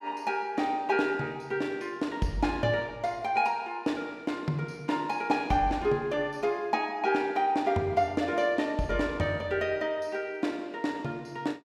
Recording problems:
none

